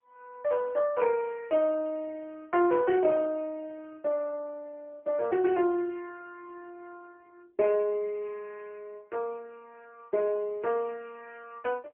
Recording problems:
phone line; 300 Hz to 2.6 kHz, AMR-NB

